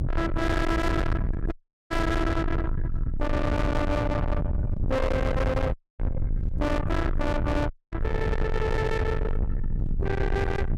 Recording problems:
distortion; soft clipping, signal-to-distortion ratio 6 dB
low-frequency rumble; below 330 Hz, SNR 1 dB
dropout; at 1.5 s, at 5.5 s and at 7.5 s

